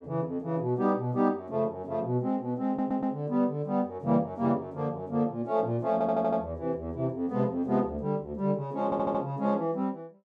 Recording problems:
audio stuttering; at 2.5 s, at 6 s and at 9 s

